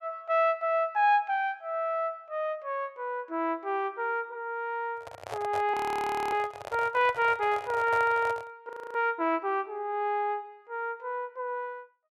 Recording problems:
handling noise; from 5 to 8.5 s; peak -4 dB vs average level
frozen audio; at 5.5 s for 0.5 s and at 8.5 s

